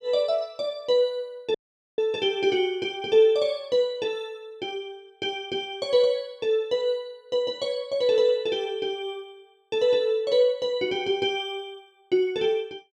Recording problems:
audio cutting out; at 1.5 s

